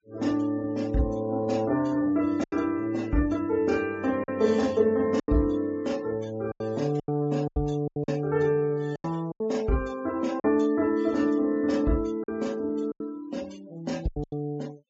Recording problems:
treble missing; nothing above 8 kHz
denoising artefacts; signal-to-artefact ratio 23 dB
lost packets; 7% of the sound replaced, filled with silence

